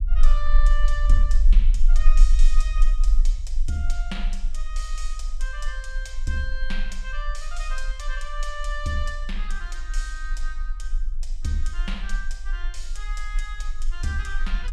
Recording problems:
low-frequency rumble; below 34 Hz, strongest tone 24 Hz, SNR -7 dB

